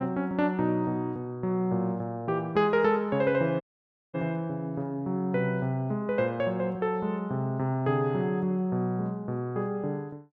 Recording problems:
dropout; at 3.5 s for 0.5 s

